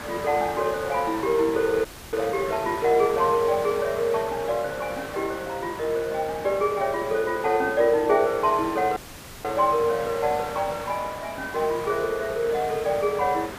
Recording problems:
hiss; SNR 12 dB
dropout; at 2 s and at 9 s

